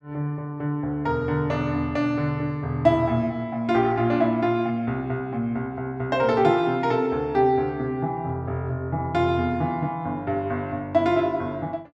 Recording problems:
none

